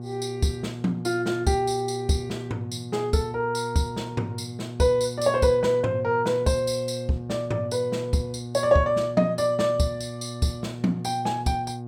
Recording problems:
electrical hum; 60 Hz, harmonics up to 840 Hz, SNR 10 dB

